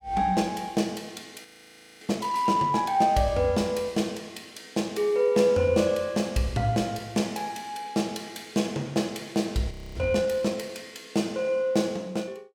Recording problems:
audio freezing; at 1.5 s for 0.5 s and at 9.5 s

